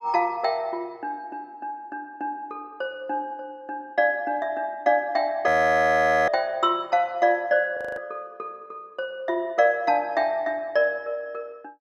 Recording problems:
frozen audio; at 5.5 s for 1 s and at 8 s

